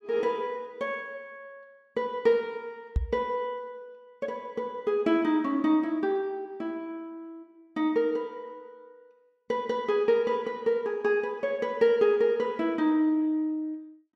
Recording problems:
knock on the microphone; at 3 s; peak +4 dB vs average level

